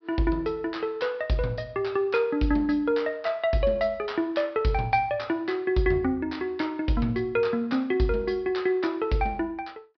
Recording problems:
low-pass filter; nothing above 5.5 kHz

